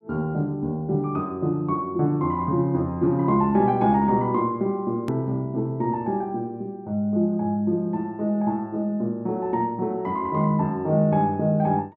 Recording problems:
click at an edit; at 5 s

